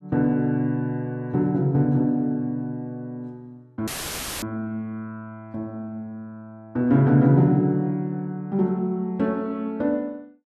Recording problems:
audio cutting out; at 4 s for 0.5 s; filled with static

